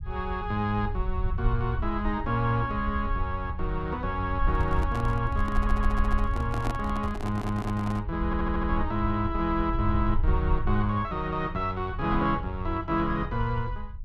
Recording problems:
rumble; below 70 Hz, SNR 4 dB
handling noise; from 4.5 to 8 s; peak -1 dB vs average level
audio stuttering; at 5.5 s, at 7 s and at 8.5 s

